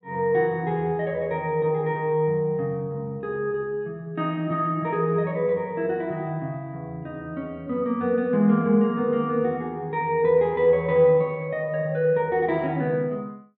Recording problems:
none

